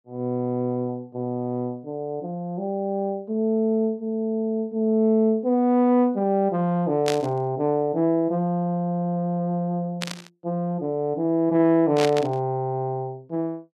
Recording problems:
static burst; at 7 s, at 10 s and at 12 s; peak 0 dB vs average level

